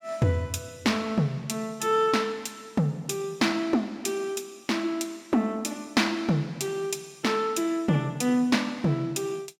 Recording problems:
none

